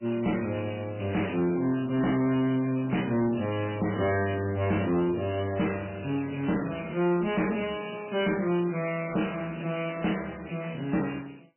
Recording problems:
lossy compression; MP3, log-spectral distance 13 dB, nothing above 3 kHz
distortion; soft clipping, signal-to-distortion ratio 10 dB

